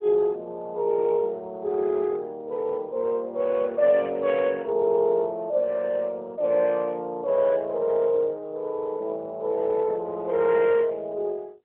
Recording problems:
telephone audio; 220 Hz to 3.3 kHz, AMR-NB

